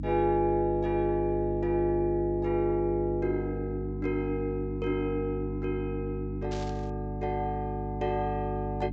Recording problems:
low-pass filter; nothing above 8 kHz
hum; 50 Hz, harmonics up to 300 Hz, SNR 5 dB
burst of static; at 6.5 s; peak -9 dB vs average level

